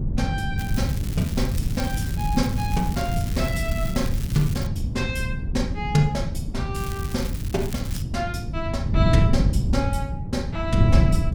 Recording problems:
wind noise; below 140 Hz, SNR -2 dB
crackling; from 0.5 to 4.5 s and from 7 to 8 s; loose cable, SNR 11 dB

